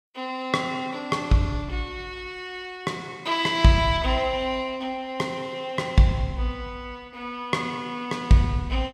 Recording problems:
none

